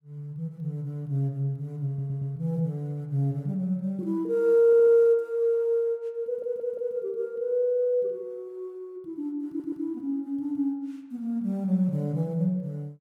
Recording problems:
stutter; 4 times, first at 2 s

